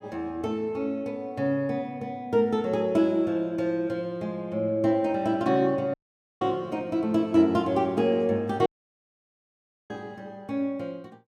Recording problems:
audio cutting out; at 6 s and at 8.5 s for 1 s

